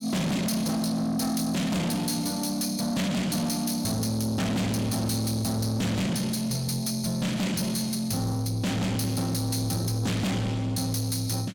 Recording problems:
distorted audio; soft clipping, signal-to-distortion ratio 7 dB

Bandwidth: 18 kHz